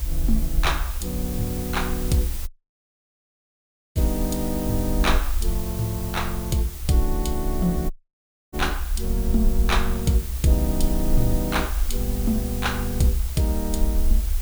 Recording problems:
hiss; slope -1 dB per octave, SNR 9 dB
low-frequency rumble; below 66 Hz, SNR 3 dB
dropout; at 2.5 s for 1.5 s and at 8 s for 0.5 s

